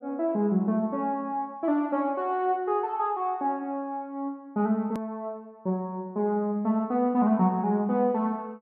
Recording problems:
edit click; at 5 s

